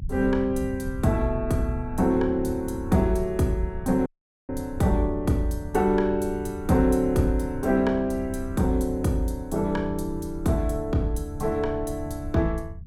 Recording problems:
rumble; below 90 Hz, SNR 12 dB
dropout; at 4 s

